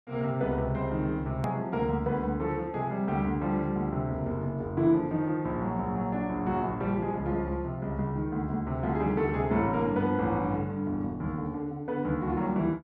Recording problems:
hard cut with a click; at 1.5 s

